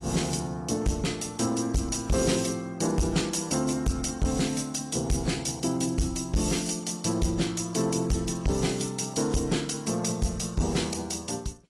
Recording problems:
lossy compression; AAC, log-spectral distance 6 dB, nothing above 11 kHz
distorted audio; soft clipping, signal-to-distortion ratio 7 dB

